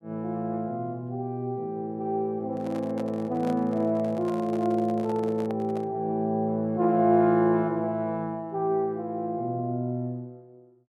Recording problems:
microphone handling noise; from 2.5 to 6 s; peak -8 dB vs average level

